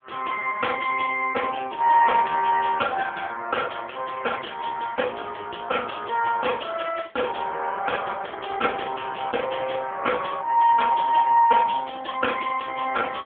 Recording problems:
telephone audio; 260 Hz to 2.5 kHz, AMR-NB

